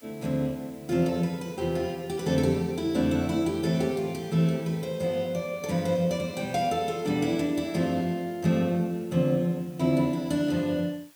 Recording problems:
hiss; slope 0 dB per octave, SNR 27 dB

